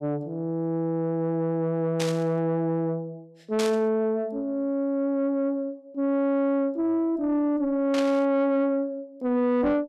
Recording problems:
distortion; soft clipping, signal-to-distortion ratio 10 dB
static burst; at 2 s, at 3.5 s and at 8 s; peak -2 dB vs average level

